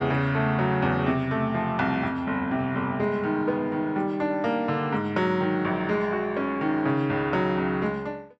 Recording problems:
none

